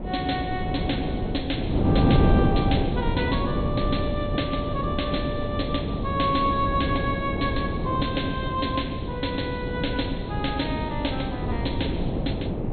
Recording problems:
treble missing; nothing above 4.3 kHz
wind noise; below 340 Hz, SNR -2 dB

